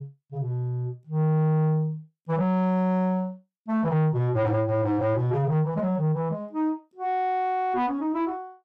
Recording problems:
distortion; soft clipping, signal-to-distortion ratio 10 dB

